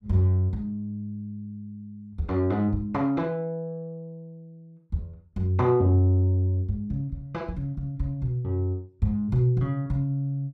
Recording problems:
none

